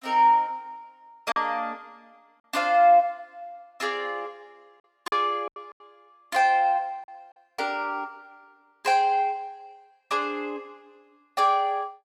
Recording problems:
lost packets; 3% of the sound replaced, filled with silence

